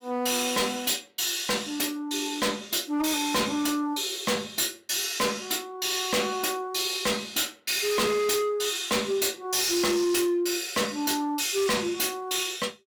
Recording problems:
distorted audio; hard clipping, signal-to-distortion ratio 7 dB

